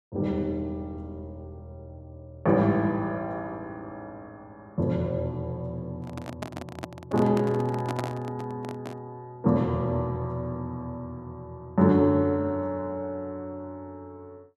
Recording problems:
handling noise; from 6 to 9 s; peak -1 dB vs average level

